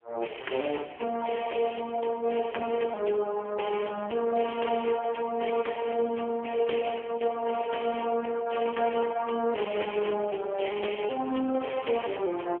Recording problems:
phone line; 280 Hz to 2.2 kHz, AMR-NB

